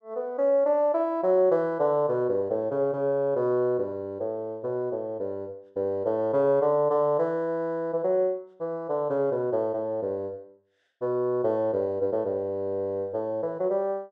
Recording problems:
none

